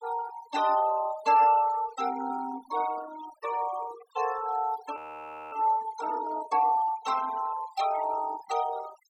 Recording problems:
denoising artefacts; signal-to-artefact ratio 15 dB
frozen audio; at 5 s for 0.5 s

